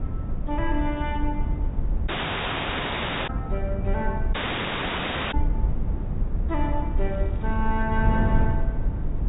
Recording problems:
treble missing; nothing above 4 kHz
rumble; below 56 Hz, SNR 1 dB
wind on the microphone; below 160 Hz, SNR 0 dB
audio cutting out; at 2 s for 1 s and at 4.5 s for 1 s
crackle; at 7 s; loose cable, SNR 30 dB

